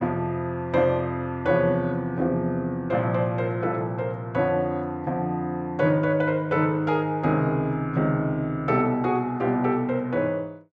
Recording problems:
none

